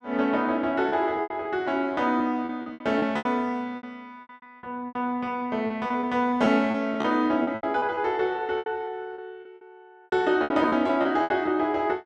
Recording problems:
lost packets; 15% of the sound replaced, filled with repeated pitch periods

